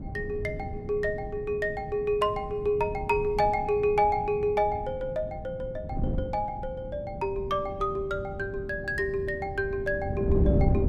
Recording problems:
wind on the microphone; below 210 Hz, SNR 7 dB

